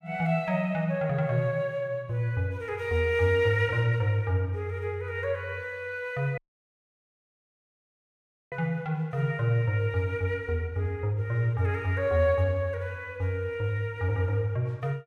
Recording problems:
audio cutting out; at 6.5 s for 2 s

